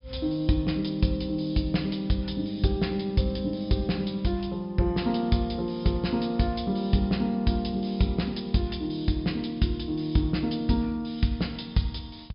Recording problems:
treble cut off; nothing above 5.5 kHz

